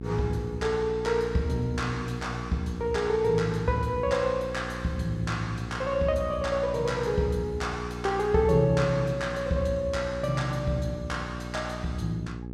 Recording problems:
hum; 60 Hz, harmonics up to 540 Hz, SNR 9 dB

